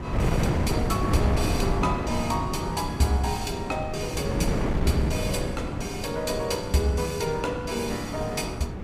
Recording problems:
wind on the microphone; below 350 Hz, SNR 1 dB

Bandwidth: 15.5 kHz